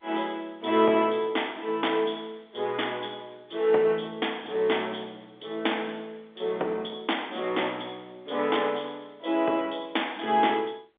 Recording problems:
phone line; 280 Hz to 3.6 kHz, G.711

